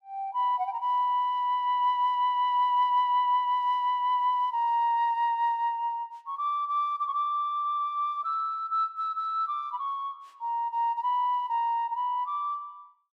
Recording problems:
none

